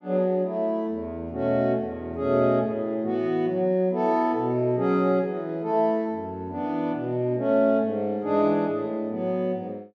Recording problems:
none

